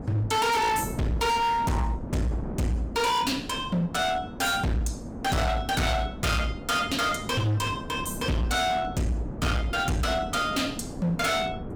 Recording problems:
distorted audio; hard clipping, signal-to-distortion ratio 6 dB
wind noise; below 420 Hz, SNR 11 dB

